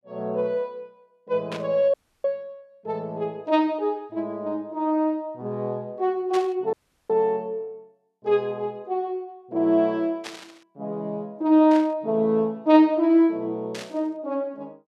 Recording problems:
burst of static; 5 times, first at 1.5 s; peak -7 dB vs average level
audio cutting out; at 2 s and at 6.5 s

